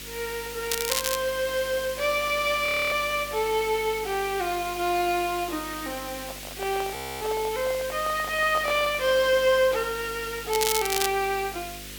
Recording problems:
hum; 50 Hz, harmonics up to 550 Hz, SNR 20 dB
hiss; SNR 11 dB
crackling; at 0.5 s and at 11 s; loose cable, SNR 2 dB
audio freezing; at 2.5 s and at 7 s
microphone handling noise; from 6 to 9 s; peak -5 dB vs average level

